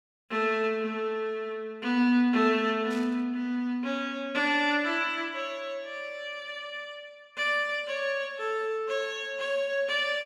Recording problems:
static burst; at 3 s; peak -13 dB vs average level

